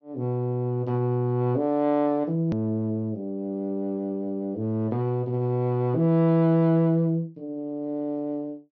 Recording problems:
low-pass filter; nothing above 6.2 kHz
edit click; at 2.5 s

